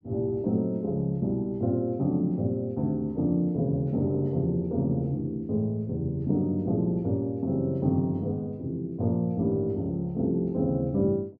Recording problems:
none

